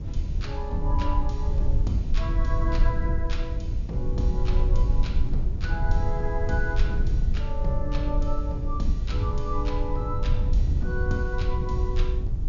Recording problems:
treble missing; nothing above 7 kHz
background hiss; slope 0 dB per octave, SNR 30 dB
rumble; below 70 Hz, SNR -6 dB

